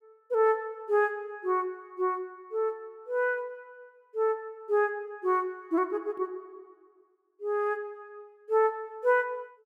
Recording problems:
none

